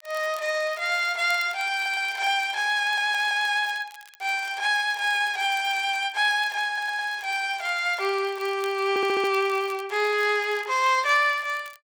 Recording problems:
crackle; vinyl, SNR 24 dB
stutter; 4 times, first at 2 s

